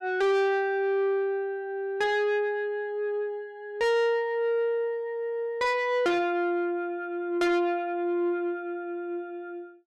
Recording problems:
distortion; soft clipping, signal-to-distortion ratio 7 dB

